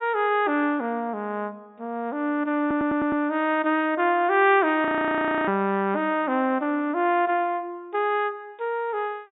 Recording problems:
treble missing; nothing above 4 kHz
audio stuttering; at 2.5 s
audio freezing; at 5 s for 0.5 s

